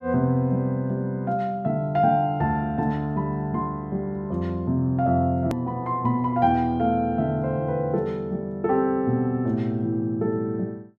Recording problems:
edit click; at 5.5 s

